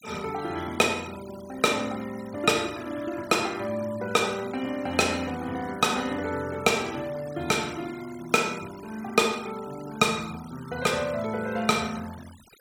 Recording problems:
noise reduction artefacts; signal-to-artefact ratio 19 dB

